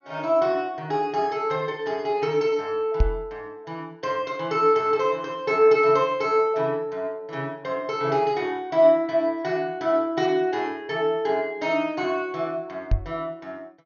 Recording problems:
treble missing; nothing above 6.7 kHz
microphone thump; at 3 s and at 13 s; peak +6 dB vs average level

